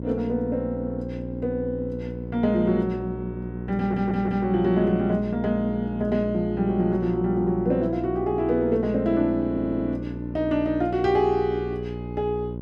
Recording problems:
hum; 60 Hz, harmonics up to 600 Hz, SNR 9 dB
stutter; at 4 s and at 9.5 s

